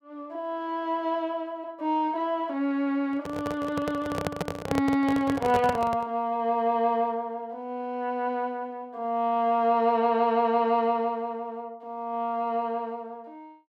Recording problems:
handling noise; from 3 to 6 s; peak +2 dB vs average level

